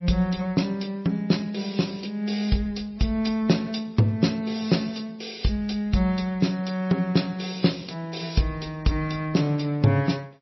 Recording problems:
codec artefacts; MP3, then MP3, log-spectral distance 5 dB, nothing above 5.7 kHz

